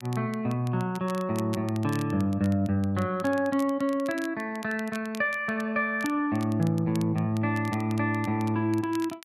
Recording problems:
crackling; vinyl, SNR 20 dB

